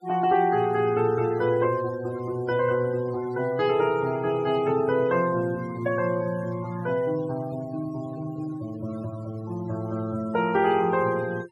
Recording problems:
denoising artefacts; signal-to-artefact ratio 19 dB

